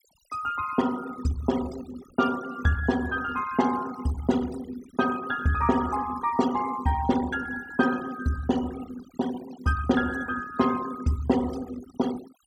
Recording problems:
noise reduction artefacts; signal-to-artefact ratio 15 dB

